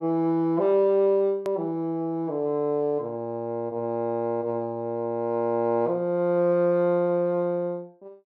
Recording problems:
click at an edit; at 1.5 s

